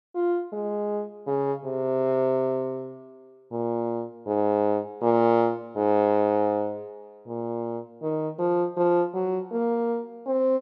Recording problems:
none

